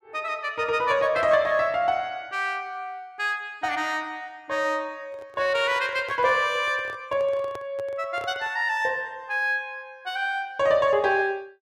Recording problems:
microphone handling noise; from 5 to 8.5 s; peak -10 dB vs average level

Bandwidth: 14 kHz